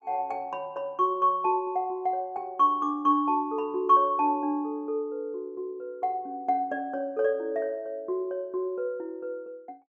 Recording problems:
none

